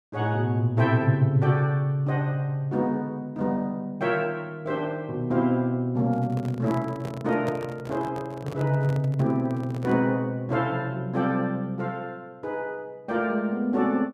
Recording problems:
microphone handling noise; from 6 to 10 s; peak -4 dB vs average level

